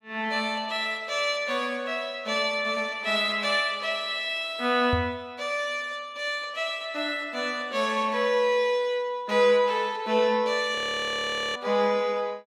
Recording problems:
knock on the microphone; at 5 s; peak +1 dB vs average level
audio freezing; at 11 s for 1 s

